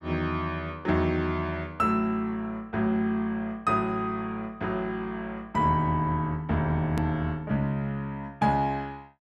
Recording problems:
edit click; at 7 s

